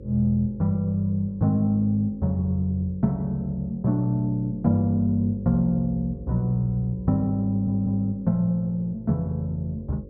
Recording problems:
hum; 50 Hz, harmonics up to 550 Hz, SNR 19 dB
audio stuttering; at 7.5 s

